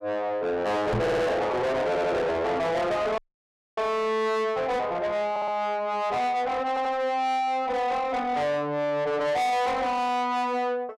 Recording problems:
distorted audio; soft clipping, signal-to-distortion ratio 7 dB
knock on the microphone; at 1 s; peak +6 dB vs average level
audio stuttering; 4 times, first at 1 s
audio cutting out; at 3 s for 0.5 s

